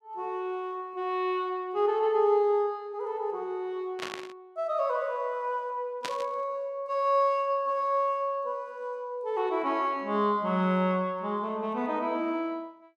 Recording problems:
burst of static; at 4 s and at 6 s; peak -2 dB vs average level

